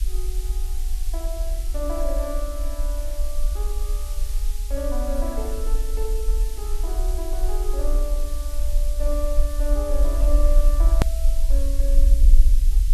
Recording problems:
background hiss; SNR 8 dB
rumble; below 46 Hz, SNR -9 dB
edit click; at 11 s

